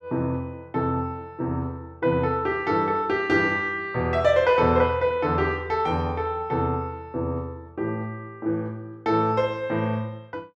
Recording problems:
none

